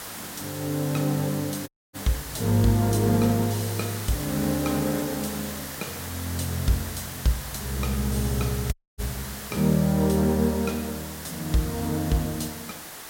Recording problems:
background hiss; slope -2 dB per octave, SNR 9 dB
dropout; at 1.5 s and at 8.5 s

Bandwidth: 16.5 kHz